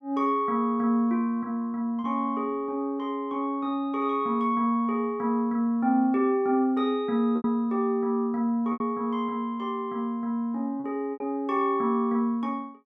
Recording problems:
packet loss; 3% of the sound replaced, filled with repeated pitch periods

